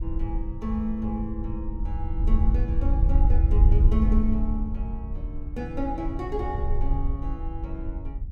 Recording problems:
wind noise; below 68 Hz, SNR -5 dB

